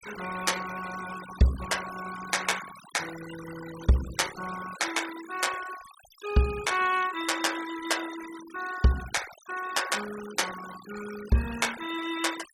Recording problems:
denoising artefacts; signal-to-artefact ratio 12 dB

